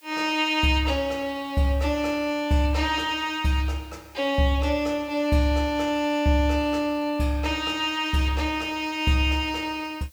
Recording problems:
background hiss; slope +1 dB per octave, SNR 29 dB

